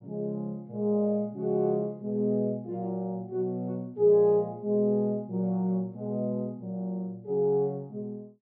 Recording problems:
treble missing; nothing above 5.5 kHz

